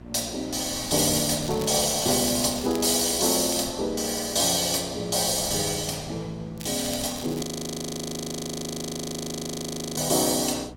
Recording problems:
hum; 60 Hz, harmonics up to 1.4 kHz, SNR 22 dB
wind noise; below 650 Hz, SNR 22 dB
crackling; from 1.5 to 3.5 s and at 6.5 s; loose cable, SNR 16 dB
audio freezing; at 7.5 s for 2.5 s

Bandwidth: 16.5 kHz